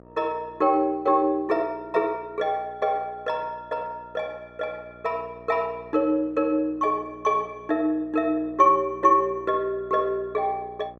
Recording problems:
electrical hum; 60 Hz, harmonics up to 1.4 kHz, SNR 24 dB

